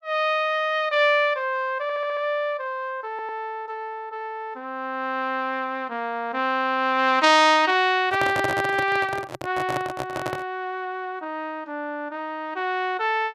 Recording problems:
stutter; at 2 s and at 3 s
microphone handling noise; from 8 to 10 s; peak 0 dB vs average level

